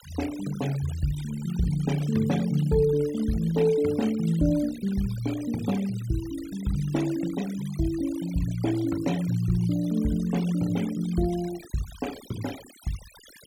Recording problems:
noise reduction artefacts; signal-to-artefact ratio 17 dB

